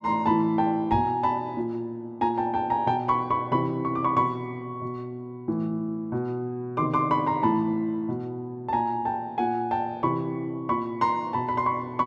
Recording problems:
knock on the microphone; at 1 s; peak +1 dB vs average level

